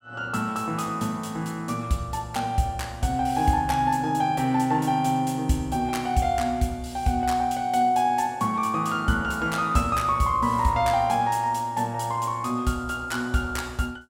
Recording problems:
none

